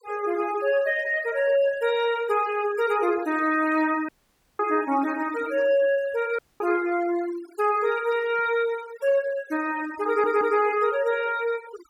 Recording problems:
noise reduction artefacts; signal-to-artefact ratio 18 dB
audio cutting out; at 4 s for 0.5 s and at 6.5 s
stutter; at 10 s

